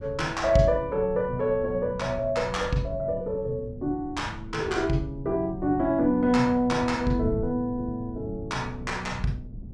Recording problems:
wind noise; below 150 Hz, SNR 14 dB

